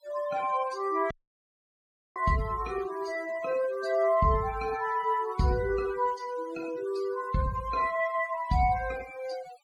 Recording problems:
denoising artefacts; signal-to-artefact ratio 20 dB
audio cutting out; at 1 s for 1 s

